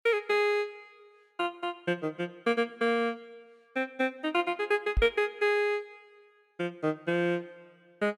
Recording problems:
microphone bump; at 5 s; peak +4 dB vs average level

